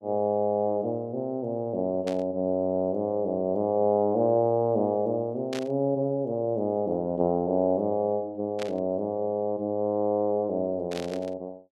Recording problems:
static burst; 4 times, first at 2 s; peak -7 dB vs average level

